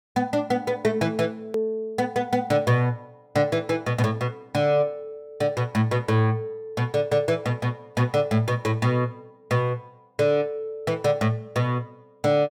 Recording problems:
edit click; at 1.5 s

